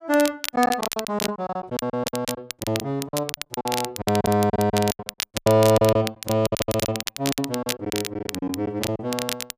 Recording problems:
crackling; vinyl, SNR 7 dB
lost packets; 19% of the sound replaced, filled with silence

